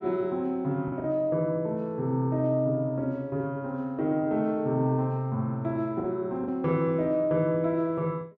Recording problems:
packet loss; 1.9% of the sound replaced, filled with the last packet

